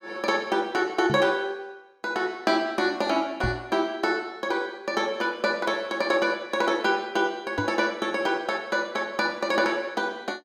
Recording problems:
microphone bump; at 1 s, at 3.5 s and at 7.5 s; peak 0 dB vs average level

